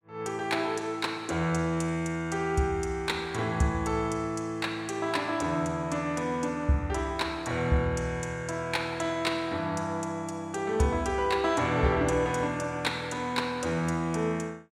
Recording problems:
none

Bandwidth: 16 kHz